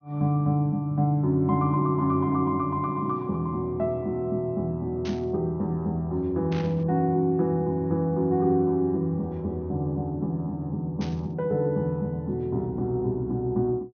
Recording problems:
low-pass filter; nothing above 6.5 kHz
static burst; at 5 s, at 6.5 s and at 11 s; peak -10 dB vs average level

